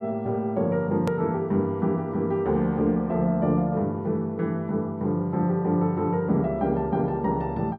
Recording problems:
edit click; at 1 s

